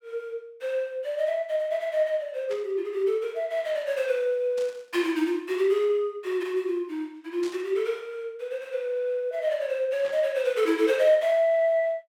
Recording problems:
burst of static; 4 times, first at 2.5 s; peak -11 dB vs average level

